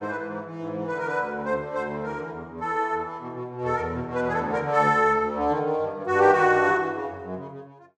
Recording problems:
none

